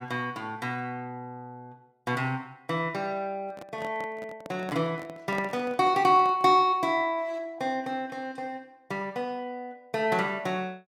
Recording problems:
microphone handling noise; from 3.5 to 6.5 s; peak -4 dB vs average level

